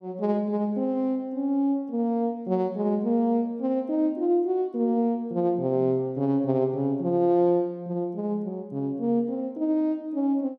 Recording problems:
none

